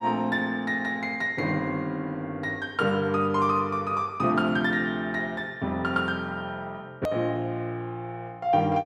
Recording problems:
edit click; at 7 s

